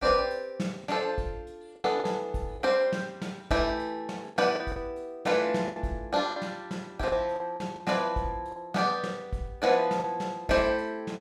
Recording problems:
packet loss; 6% of the sound replaced, filled with the last packet

